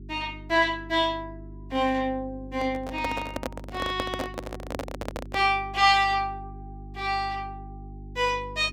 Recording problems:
mains hum; 50 Hz, harmonics up to 400 Hz, SNR 16 dB
handling noise; from 2.5 to 5.5 s; peak -1 dB vs average level

